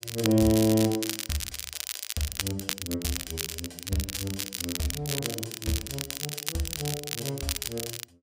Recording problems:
crackling; vinyl, SNR 3 dB

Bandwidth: 15.5 kHz